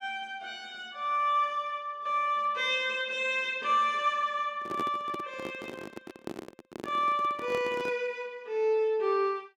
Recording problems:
handling noise; from 4.5 to 8 s; peak -3 dB vs average level

